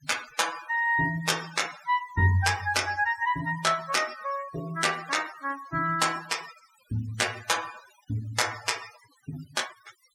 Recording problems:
noise reduction artefacts; signal-to-artefact ratio 14 dB

